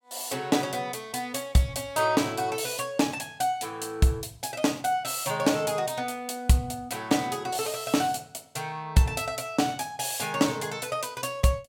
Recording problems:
none

